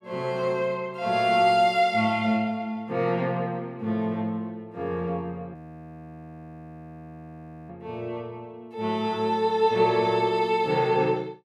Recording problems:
frozen audio; at 5.5 s for 2 s

